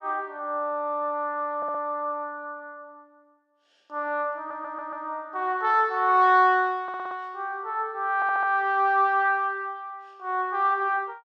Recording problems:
audio stuttering; 4 times, first at 1.5 s

